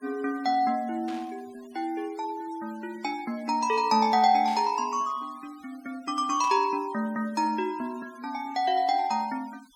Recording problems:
denoising artefacts; signal-to-artefact ratio 25 dB
burst of static; at 1 s, at 4.5 s and at 6.5 s; peak -12 dB vs average level

